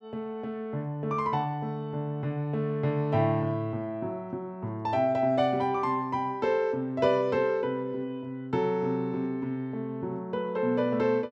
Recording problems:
none

